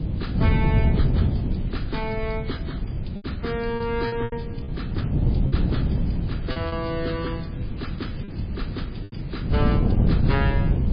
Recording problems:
lossy compression; MP3, log-spectral distance 3 dB, nothing above 5 kHz
hiss; SNR 19 dB
wind noise; below 170 Hz, SNR -6 dB
lost packets; 4% of the sound replaced, filled with repeated pitch periods

